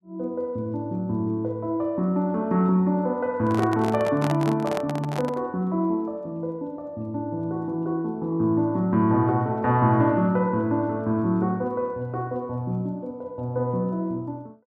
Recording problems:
microphone handling noise; from 3.5 to 5.5 s; peak -2 dB vs average level

